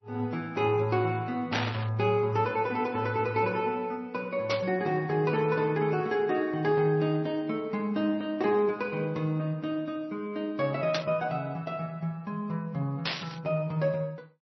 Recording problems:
lossy compression; MP3, log-spectral distance 2 dB, nothing above 5.8 kHz
static burst; 4 times, first at 1.5 s; peak +3 dB vs average level

